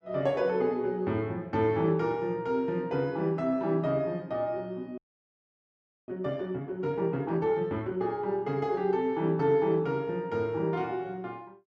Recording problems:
audio freezing; at 5 s for 1 s

